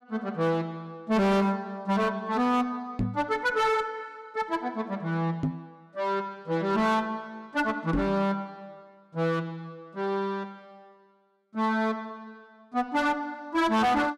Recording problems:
distorted audio; hard clipping, uneven, signal-to-distortion ratio 10 dB
microphone bump; at 3 s, at 5.5 s and at 8 s; peak +4 dB vs average level

